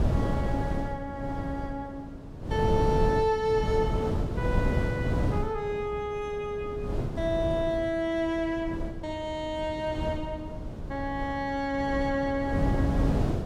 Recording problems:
wind noise; below 270 Hz, SNR 2 dB

